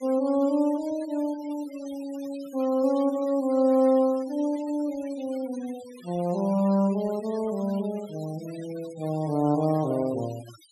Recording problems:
denoising artefacts; signal-to-artefact ratio 21 dB

